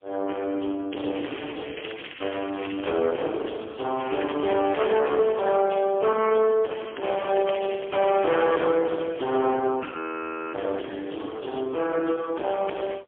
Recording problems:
phone line; 260 Hz to 3.3 kHz, AMR-NB, then MP3
distortion; soft clipping, signal-to-distortion ratio 9 dB
crackling; from 1 to 3 s, at 4 s and from 7 to 8.5 s; loose cable, SNR 14 dB
audio freezing; at 10 s for 0.5 s

